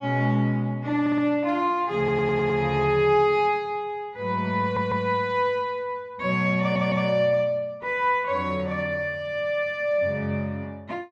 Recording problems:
audio stuttering; 4 times, first at 1 s

